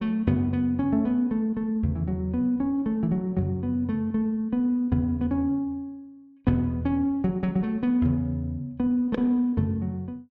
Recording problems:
none

